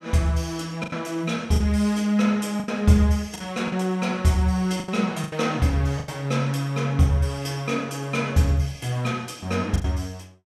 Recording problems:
packet loss; 6% of the sound replaced, filled with the last packet

